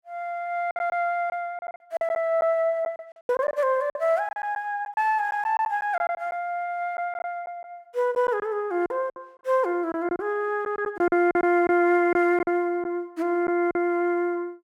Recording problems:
packet loss; 9% of the sound replaced, filled with silence

